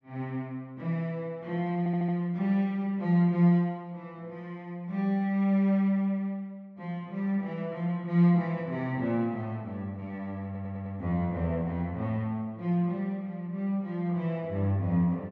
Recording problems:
stutter; at 2 s and at 10 s

